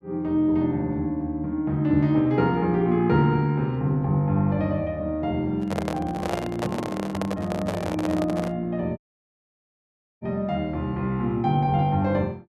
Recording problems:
handling noise; from 5.5 to 8.5 s; peak 0 dB vs average level
dropout; at 9 s for 1 s

